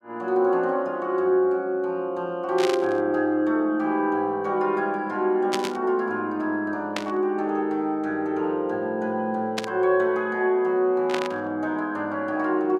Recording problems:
burst of static; 5 times, first at 2.5 s; peak 0 dB vs average level

